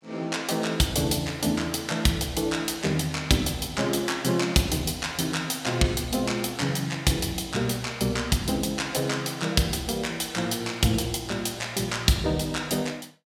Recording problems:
none

